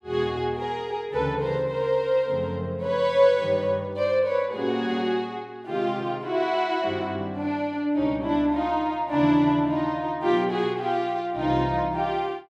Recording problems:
none

